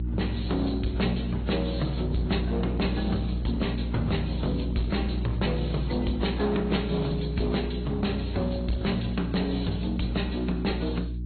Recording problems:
low-pass filter; nothing above 4.3 kHz
codec artefacts; AAC, then AAC, log-spectral distance 3 dB
distortion; hard clipping, uneven, signal-to-distortion ratio 10 dB
hum; 60 Hz, harmonics up to 360 Hz, SNR 4 dB

